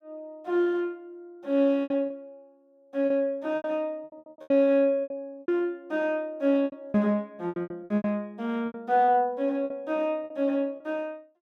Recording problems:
lost packets; 14% of the sound replaced, filled with repeated pitch periods

